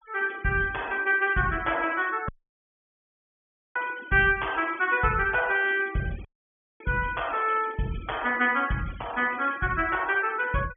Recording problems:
treble cut off; nothing above 3.3 kHz
denoising artefacts; signal-to-artefact ratio 21 dB
dropout; at 2.5 s for 1.5 s and at 6.5 s for 0.5 s

